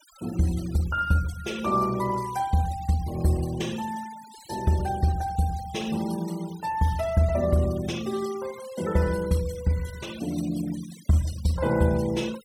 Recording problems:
noise reduction artefacts; signal-to-artefact ratio 18 dB

